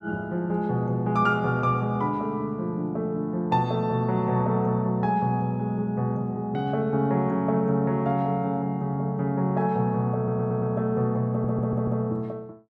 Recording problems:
stutter; at 10 s and at 11 s

